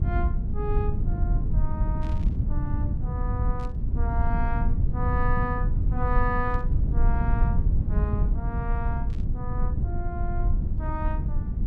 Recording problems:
rumble; below 88 Hz, SNR -7 dB
static burst; 4 times, first at 2 s; peak -11 dB vs average level

